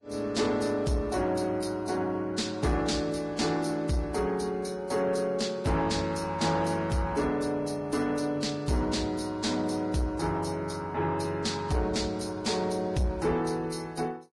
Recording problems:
codec artefacts; Vorbis, log-spectral distance 3 dB, nothing above 11 kHz
distorted audio; soft clipping, signal-to-distortion ratio 11 dB

